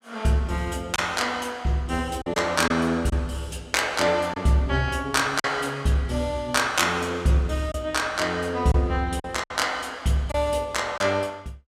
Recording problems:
lost packets; 3% of the sound replaced, filled with silence

